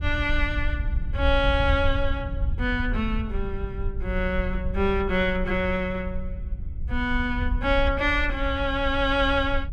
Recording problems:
wind noise; below 72 Hz, SNR 5 dB

